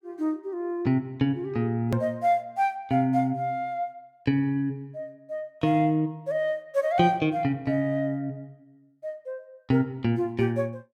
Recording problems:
edit click; at 2 s

